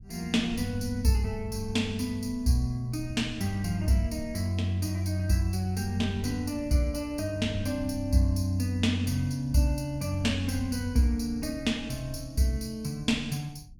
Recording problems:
low-frequency rumble; below 110 Hz, SNR 15 dB

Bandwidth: 18 kHz